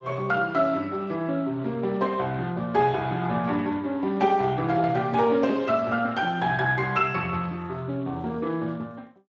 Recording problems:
codec artefacts; Speex, log-spectral distance 3 dB, nothing above 7.3 kHz

